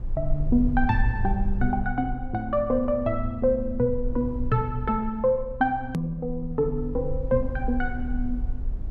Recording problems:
rumble; below 54 Hz, SNR 7 dB
click at an edit; at 6 s

